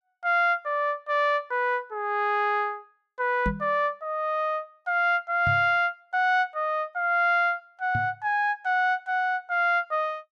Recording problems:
microphone bump; at 3.5 s, at 5.5 s and at 8 s; peak 0 dB vs average level

